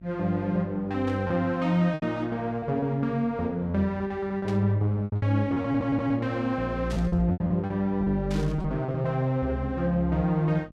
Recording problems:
hum; 50 Hz, harmonics up to 650 Hz, SNR 24 dB
lost packets; 8% of the sound replaced, filled with repeated pitch periods
burst of static; 4 times, first at 1 s; peak -10 dB vs average level
stutter; at 5.5 s

